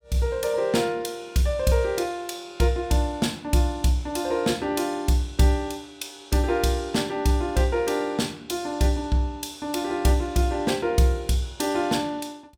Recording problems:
none

